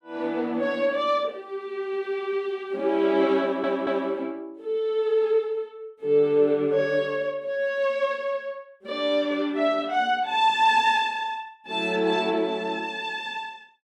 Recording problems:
stutter; at 3.5 s

